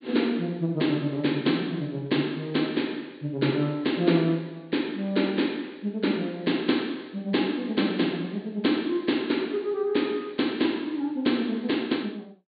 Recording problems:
low-pass filter; nothing above 4.5 kHz

